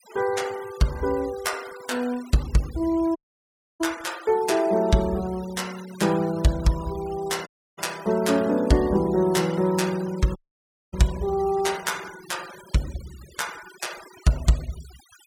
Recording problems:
noise reduction artefacts; signal-to-artefact ratio 18 dB
audio cutting out; at 3 s for 0.5 s, at 7.5 s and at 10 s for 0.5 s

